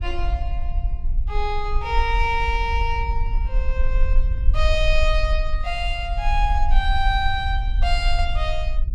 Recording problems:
rumble; below 48 Hz, strongest tone 22 Hz, SNR 0 dB

